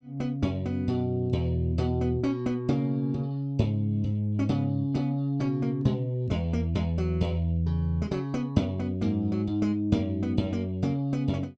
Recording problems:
none

